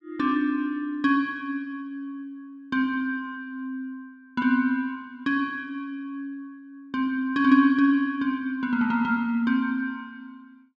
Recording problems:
none

